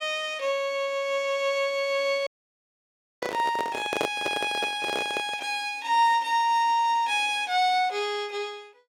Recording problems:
audio cutting out; at 2.5 s for 1 s
handling noise; from 3 to 5.5 s; peak +1 dB vs average level

